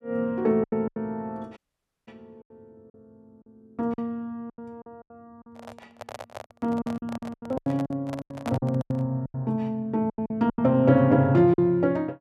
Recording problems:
lost packets; 14% of the sound replaced, filled with silence
dropout; at 1.5 s
handling noise; from 5.5 to 9 s; peak -5 dB vs average level

